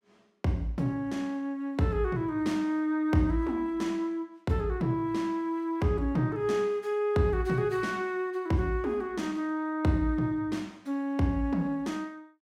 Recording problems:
none

